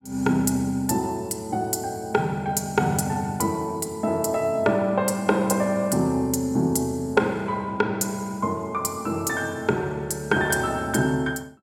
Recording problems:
none

